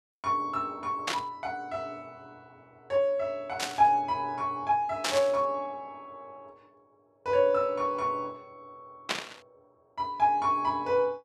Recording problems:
static burst; 4 times, first at 1 s; peak +4 dB vs average level

